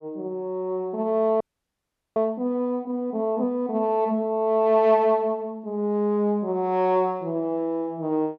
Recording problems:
frozen audio; at 1.5 s for 1 s

